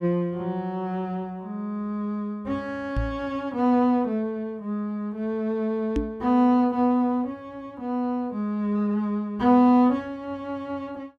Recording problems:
microphone thump; at 3 s and at 6 s; peak +2 dB vs average level

